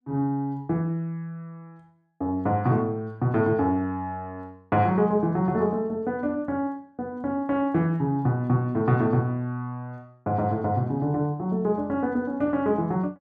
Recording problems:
none

